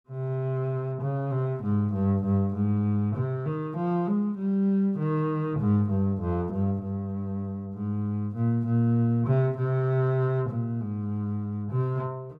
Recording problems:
none

